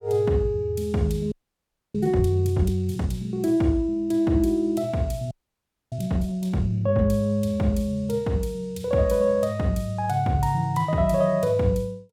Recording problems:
audio freezing; at 1.5 s for 0.5 s and at 5.5 s for 0.5 s

